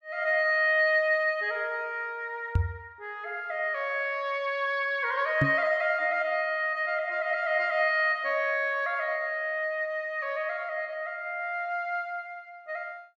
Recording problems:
knock on the microphone; at 2.5 s and at 5.5 s; peak +6 dB vs average level

